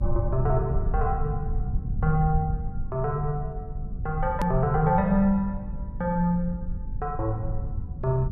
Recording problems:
electrical hum; 50 Hz, harmonics up to 550 Hz, SNR 19 dB
low-frequency rumble; below 90 Hz, SNR 5 dB
click at an edit; at 4.5 s

